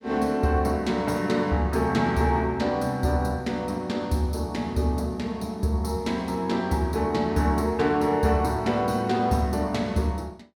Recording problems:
none

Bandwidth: 18.5 kHz